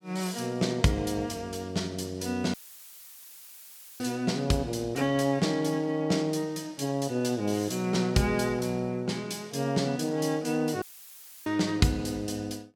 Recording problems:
audio cutting out; at 2.5 s for 1.5 s and at 11 s for 0.5 s; filled with static

